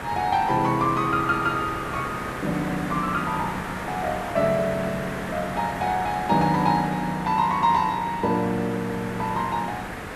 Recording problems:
hiss; SNR 8 dB

